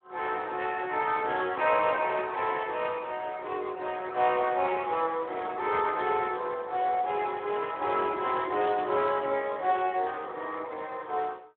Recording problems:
phone line; 340 Hz to 3.7 kHz, Speex

